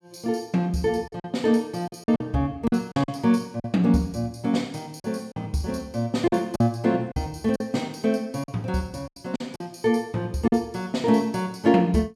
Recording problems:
packet loss; 7% of the sound replaced, filled with silence

